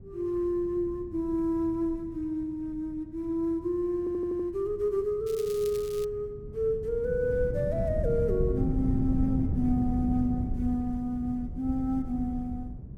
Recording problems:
wind on the microphone; below 170 Hz, SNR 5 dB
audio stuttering; at 4 s
crackle; at 5.5 s; loose cable, SNR 17 dB

